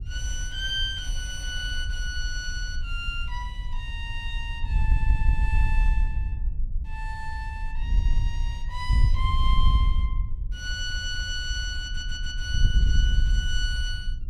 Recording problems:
wind noise; below 62 Hz, SNR -4 dB
stutter; at 5 s, at 11 s and at 12 s

